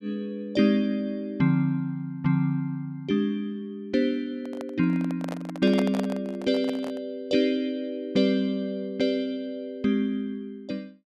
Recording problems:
microphone handling noise; from 4.5 to 7 s; peak 0 dB vs average level

